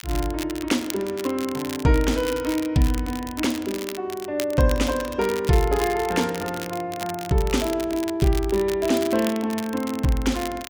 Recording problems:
crackle; vinyl, SNR 13 dB

